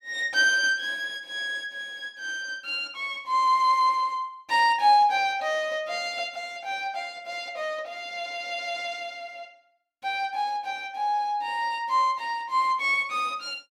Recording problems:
none

